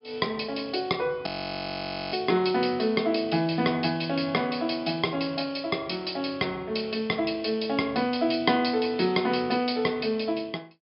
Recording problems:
low-pass filter; nothing above 5.5 kHz
frozen audio; at 1.5 s for 1 s

